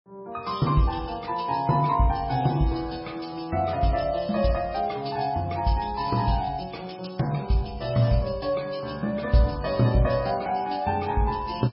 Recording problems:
codec artefacts; MP3, log-spectral distance 5 dB, nothing above 5.3 kHz

